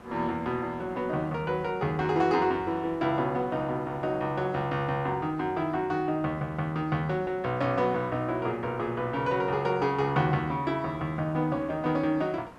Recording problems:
background hiss; SNR 20 dB

